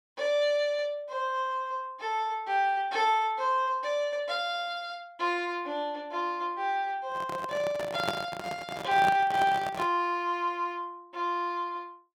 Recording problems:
microphone handling noise; from 7 to 10 s; peak +2 dB vs average level

